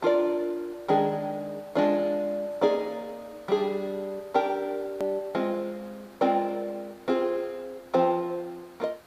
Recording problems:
hiss; SNR 25 dB
edit click; at 5 s

